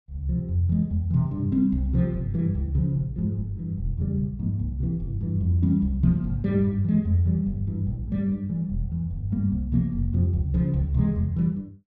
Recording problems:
none

